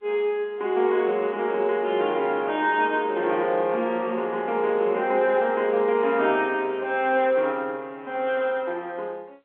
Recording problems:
phone line; 280 Hz to 3.6 kHz, G.711

